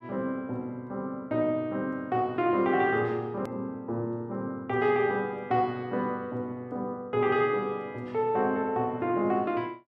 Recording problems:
click at an edit; at 3.5 s

